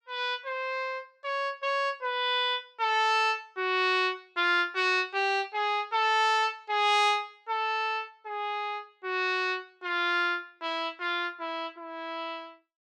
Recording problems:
none

